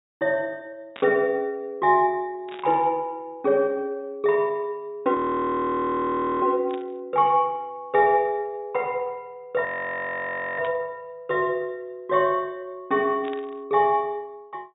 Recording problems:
treble missing; nothing above 4 kHz
burst of static; 5 times, first at 1 s; peak -11 dB vs average level
audio freezing; at 5 s for 1.5 s and at 9.5 s for 1 s

